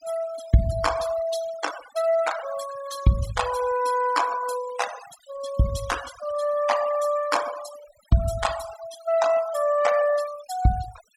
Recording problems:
denoising artefacts; signal-to-artefact ratio 13 dB

